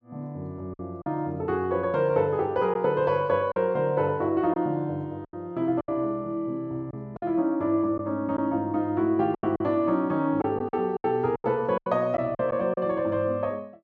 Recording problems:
lost packets; 7% of the sound replaced, filled with silence

